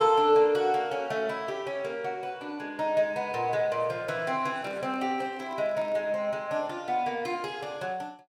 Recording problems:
handling noise; from 4.5 to 6 s; peak -13 dB vs average level

